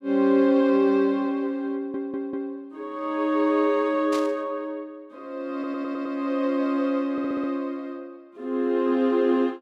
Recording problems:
stutter; at 2 s, at 5.5 s and at 7 s
burst of static; at 4 s; peak -8 dB vs average level

